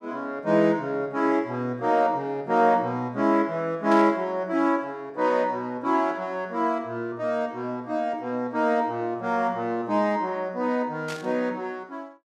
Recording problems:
static burst; at 4 s and at 11 s; peak -8 dB vs average level

